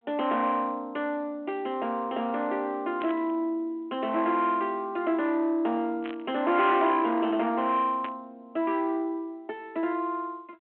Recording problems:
phone line; 260 Hz to 3.5 kHz, G.726
distorted audio; soft clipping, signal-to-distortion ratio 12 dB
static burst; at 3 s, at 6 s and at 8 s; peak -8 dB vs average level

